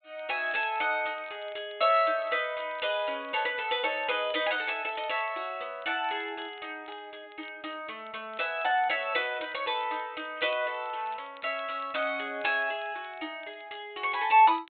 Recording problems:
low-pass filter; nothing above 4 kHz
crackle; vinyl, SNR 27 dB

